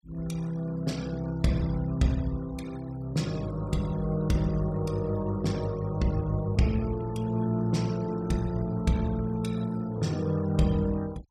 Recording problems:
noise reduction artefacts; signal-to-artefact ratio 21 dB

